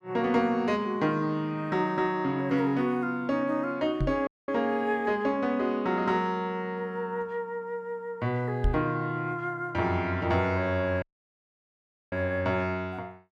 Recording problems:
knock on the microphone; at 4 s and at 8.5 s; peak +4 dB vs average level
audio cutting out; at 4.5 s and at 11 s for 1 s

